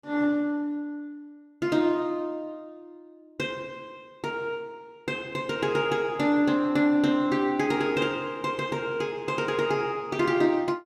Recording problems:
none

